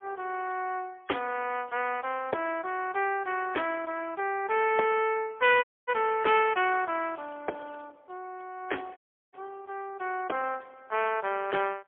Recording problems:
telephone audio; 320 Hz to 3.3 kHz, AMR-NB, then MP3
crackling; at 1.5 s and at 7 s; loose cable, SNR 29 dB
dropout; at 5.5 s and at 9 s

